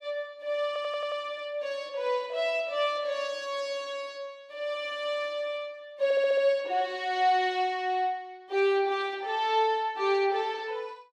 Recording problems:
stutter; at 0.5 s and at 6 s

